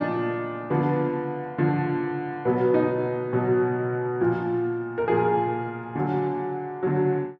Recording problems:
none

